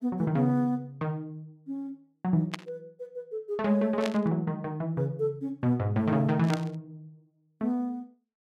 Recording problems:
burst of static; at 2.5 s, at 4 s and at 6.5 s; peak -1 dB vs average level

